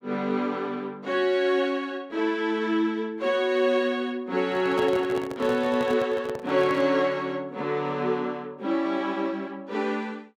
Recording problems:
handling noise; from 4.5 to 7 s; peak -3 dB vs average level

